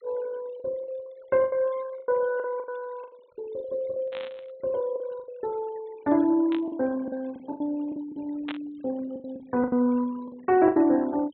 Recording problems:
treble cut off; nothing above 3.9 kHz
noise reduction artefacts; signal-to-artefact ratio 25 dB
lost packets; 12% of the sound replaced, filled with the last packet
burst of static; at 4 s, at 6.5 s and at 8.5 s; peak -5 dB vs average level

